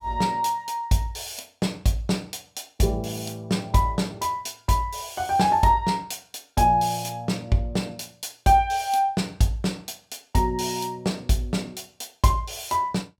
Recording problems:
none

